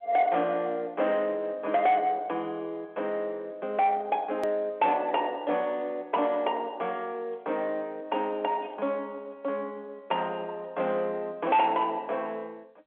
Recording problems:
telephone audio; 220 Hz to 3.5 kHz, G.711
distorted audio; soft clipping, signal-to-distortion ratio 10 dB
edit click; at 4.5 s

